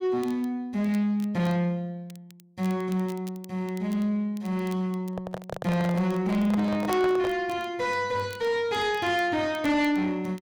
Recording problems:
distortion; soft clipping, signal-to-distortion ratio 10 dB
crackling; vinyl, SNR 25 dB
microphone handling noise; from 5 to 7.5 s; peak -2 dB vs average level

